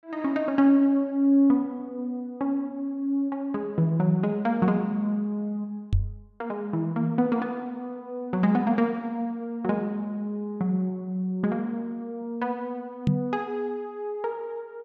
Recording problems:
microphone thump; at 6 s and at 13 s; peak +7 dB vs average level

